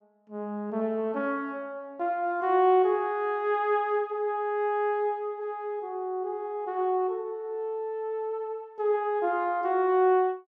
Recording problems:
none

